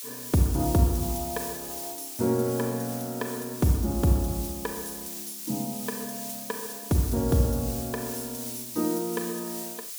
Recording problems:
hiss; slope +3 dB per octave, SNR 7 dB

